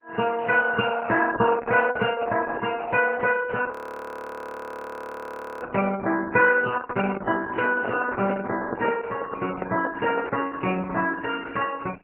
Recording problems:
lossy compression; MP3, then Opus, log-spectral distance 5 dB, nothing above 2.8 kHz
frozen audio; at 3.5 s for 2 s
microphone handling noise; from 7.5 to 10 s; peak 0 dB vs average level

